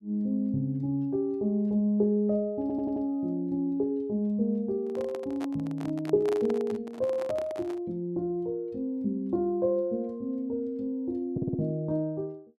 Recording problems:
stutter; at 2.5 s and at 11 s
microphone handling noise; from 5 to 8 s; peak -4 dB vs average level

